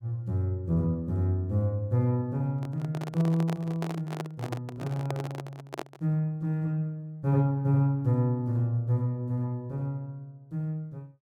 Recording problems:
handling noise; from 2.5 to 6 s; peak -2 dB vs average level

